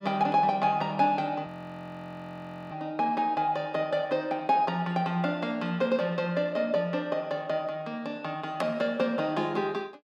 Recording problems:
audio freezing; at 1.5 s for 1 s

